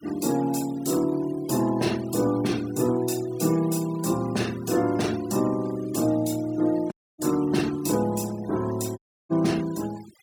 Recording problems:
denoising artefacts; signal-to-artefact ratio 18 dB
dropout; at 7 s and at 9 s

